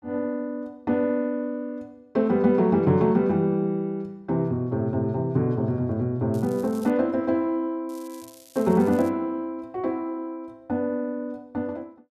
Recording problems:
crackling; at 6.5 s and from 8 to 9 s; loose cable, SNR 24 dB

